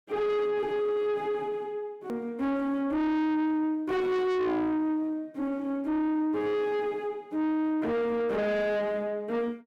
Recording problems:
distortion; soft clipping, signal-to-distortion ratio 8 dB
edit click; at 2 s

